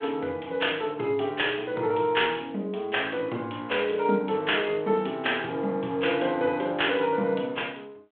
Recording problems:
telephone audio; 190 Hz to 3.5 kHz, G.726

